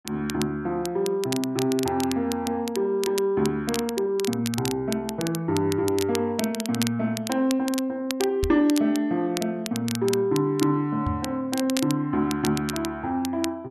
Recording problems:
crackle; vinyl, SNR 10 dB
microphone thump; at 8.5 s and at 11 s; peak +1 dB vs average level

